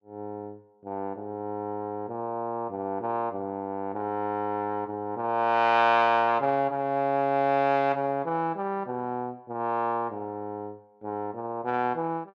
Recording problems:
none

